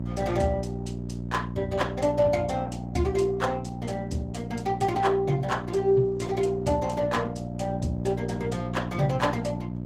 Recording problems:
codec artefacts; Opus, log-spectral distance 3 dB, nothing above 19 kHz
hum; 60 Hz, harmonics up to 660 Hz, SNR 6 dB

